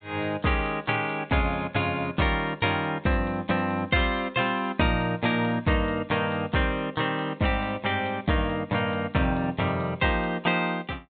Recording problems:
low-pass filter; nothing above 4 kHz

